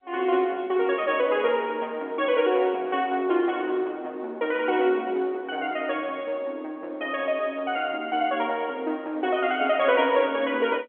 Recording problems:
phone line; 190 Hz to 3.4 kHz, G.711

